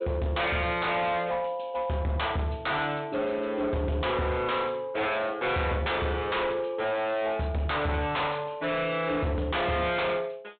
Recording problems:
low-pass filter; nothing above 4 kHz
distortion; hard clipping, signal-to-distortion ratio 8 dB

